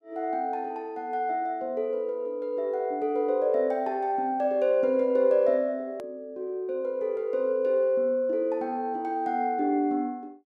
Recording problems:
edit click; at 6 s

